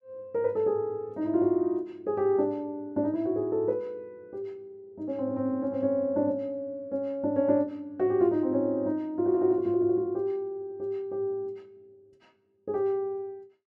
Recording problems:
none

